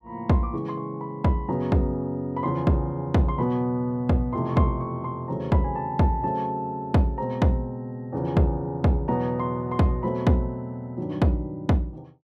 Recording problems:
none

